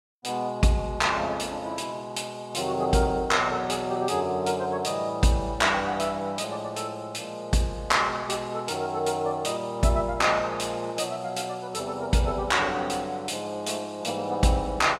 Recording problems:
none

